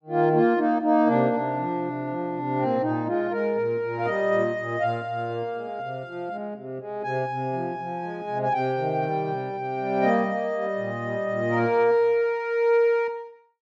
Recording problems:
none

